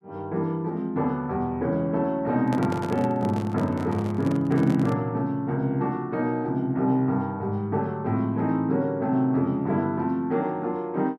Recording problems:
microphone handling noise; from 2.5 to 5 s; peak -3 dB vs average level

